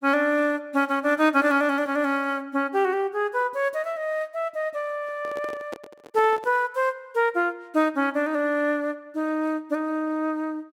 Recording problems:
handling noise; from 5 to 6.5 s; peak -7 dB vs average level

